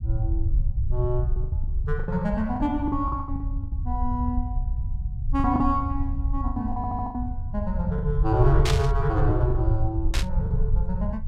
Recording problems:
rumble; below 78 Hz, SNR 0 dB
packet loss; 10% of the sound replaced, filled with the last packet
stutter; at 7 s
burst of static; at 8.5 s and at 10 s; peak +4 dB vs average level

